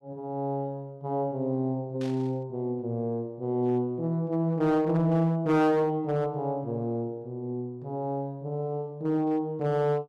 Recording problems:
distortion; hard clipping, uneven, signal-to-distortion ratio 11 dB
burst of static; at 2 s; peak -13 dB vs average level

